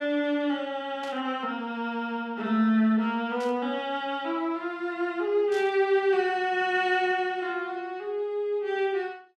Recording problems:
static burst; at 1 s, at 3.5 s and at 5.5 s; peak -13 dB vs average level

